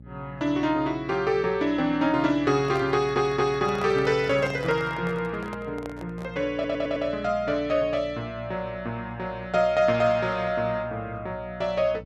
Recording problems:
hum; 60 Hz, harmonics up to 540 Hz, SNR 19 dB
microphone handling noise; from 2.5 to 6.5 s; peak -7 dB vs average level
stutter; at 3 s and at 6.5 s

